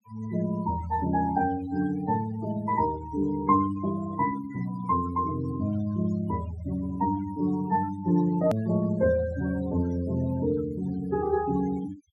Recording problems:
noise reduction artefacts; signal-to-artefact ratio 16 dB
hard cut with a click; at 8.5 s

